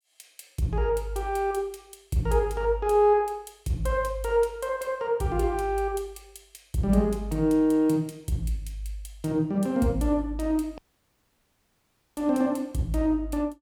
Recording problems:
dropout; at 11 s for 1.5 s

